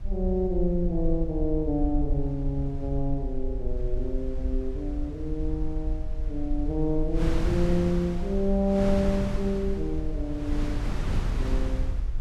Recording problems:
rumble; below 52 Hz, SNR 5 dB
wind noise; below 220 Hz, SNR 5 dB

